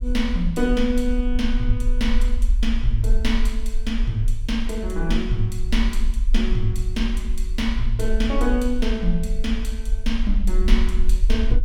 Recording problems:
rumble; below 42 Hz, SNR 0 dB

